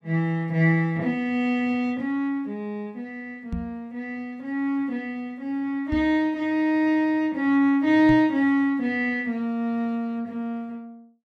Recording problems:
microphone bump; at 3.5 s, at 6 s and at 8 s; peak -3 dB vs average level

